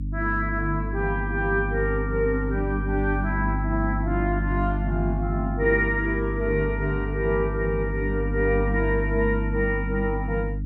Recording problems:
hum; 50 Hz, harmonics up to 300 Hz, SNR 3 dB

